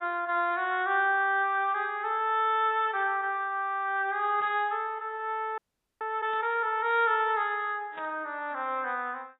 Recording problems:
codec artefacts; AAC, log-spectral distance 2 dB, nothing above 3.8 kHz
static burst; at 4.5 s, at 6.5 s and at 8 s; peak -15 dB vs average level
frozen audio; at 5.5 s

